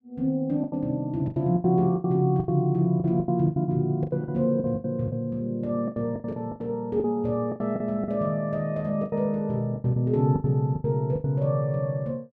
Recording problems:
lost packets; 15% of the sound replaced, filled with the last packet

